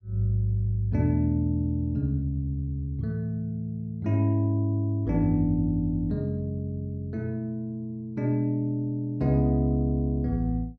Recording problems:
none

